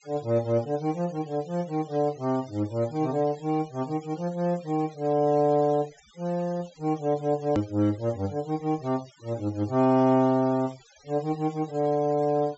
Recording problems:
treble cut off; nothing above 7.6 kHz
denoising artefacts; signal-to-artefact ratio 24 dB
edit click; at 7.5 s

